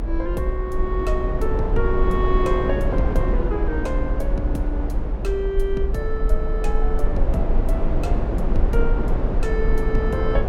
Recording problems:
low-frequency rumble; below 44 Hz, SNR -1 dB
wind noise; below 490 Hz, SNR 1 dB

